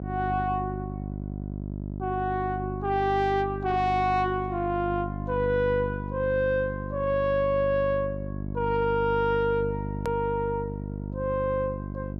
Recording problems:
distortion; soft clipping, signal-to-distortion ratio 10 dB
hum; 50 Hz, harmonics up to 700 Hz, SNR 7 dB
click at an edit; at 10 s

